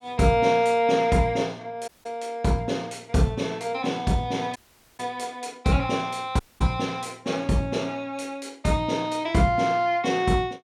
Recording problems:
dropout; at 2 s, at 4.5 s and at 6.5 s

